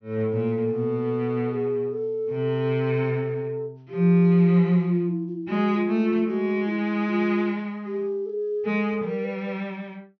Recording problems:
treble missing; nothing above 6.1 kHz

